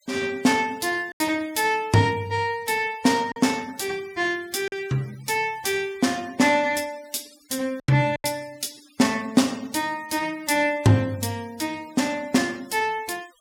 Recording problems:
denoising artefacts; signal-to-artefact ratio 23 dB
lost packets; 2% of the sound replaced, filled with silence

